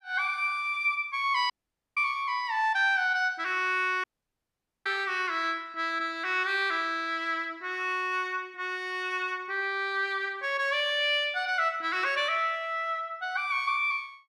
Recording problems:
dropout; at 1.5 s and at 4 s for 1 s

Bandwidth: 14.5 kHz